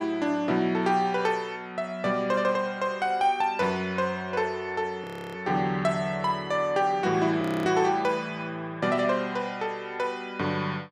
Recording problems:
frozen audio; at 5 s and at 7.5 s

